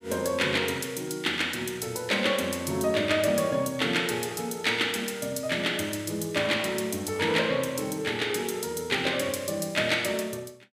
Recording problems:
none

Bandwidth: 15.5 kHz